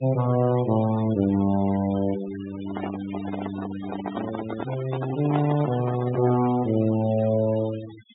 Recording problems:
treble cut off; nothing above 4 kHz
denoising artefacts; signal-to-artefact ratio 15 dB
handling noise; from 2.5 to 6.5 s; peak 0 dB vs average level

